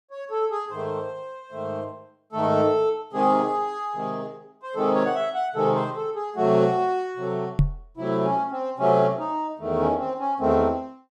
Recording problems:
knock on the microphone; at 7.5 s; peak +8 dB vs average level

